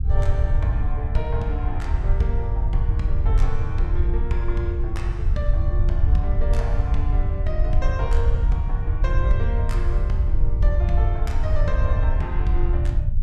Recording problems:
rumble; below 72 Hz, SNR -7 dB

